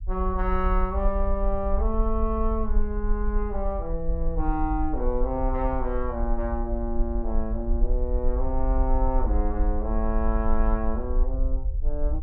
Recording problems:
low-frequency rumble; below 48 Hz, SNR 0 dB

